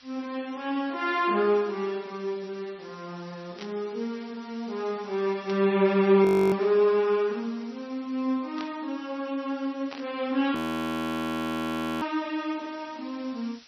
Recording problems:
lossy codec; MP3, log-spectral distance 7 dB, nothing above 15.6 kHz
hiss; slope +3 dB per octave, SNR 24 dB
burst of static; 5 times, first at 3.5 s; peak -8 dB vs average level
audio freezing; at 6.5 s and at 11 s for 1.5 s

